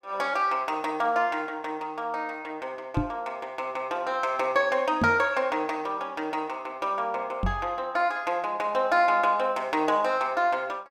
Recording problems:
knock on the microphone; at 3 s, at 5 s and at 7.5 s; peak +5 dB vs average level

